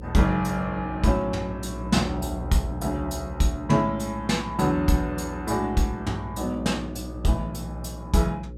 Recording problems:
hum; 60 Hz, harmonics up to 540 Hz, SNR 11 dB

